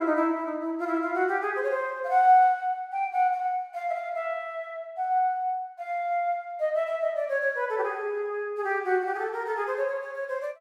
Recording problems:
none

